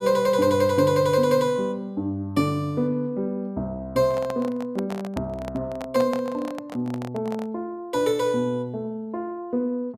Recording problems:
handling noise; from 4 to 7.5 s; peak -4 dB vs average level

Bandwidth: 15 kHz